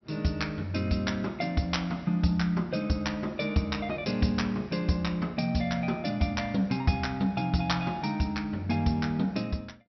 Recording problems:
treble cut off; nothing above 5.8 kHz

